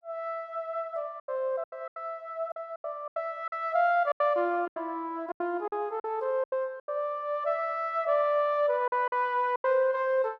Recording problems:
lost packets; 11% of the sound replaced, filled with silence

